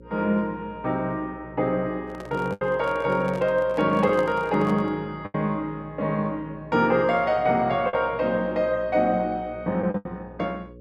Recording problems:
hum; 60 Hz, harmonics up to 540 Hz, SNR 21 dB
packet loss; 3% of the sound replaced, filled with the last packet
handling noise; from 2 to 5 s; peak -6 dB vs average level

